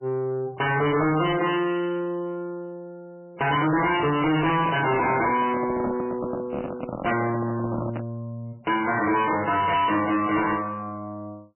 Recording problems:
lossy codec; MP3, log-spectral distance 5 dB, nothing above 3 kHz
distorted audio; soft clipping, signal-to-distortion ratio 6 dB
microphone handling noise; from 4.5 to 8 s; peak -2 dB vs average level

